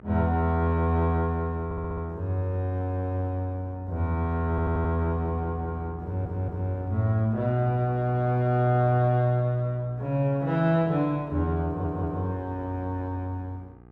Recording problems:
electrical hum; 60 Hz, harmonics up to 1.6 kHz, SNR 21 dB
audio stuttering; 4 times, first at 1.5 s

